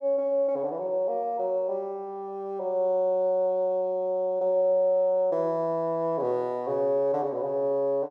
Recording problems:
none

